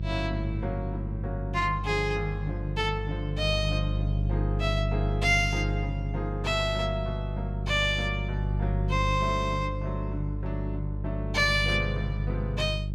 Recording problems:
mains hum; 50 Hz, harmonics up to 350 Hz, SNR 1 dB

